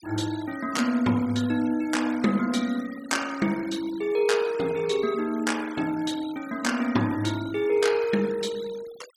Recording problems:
denoising artefacts; signal-to-artefact ratio 18 dB

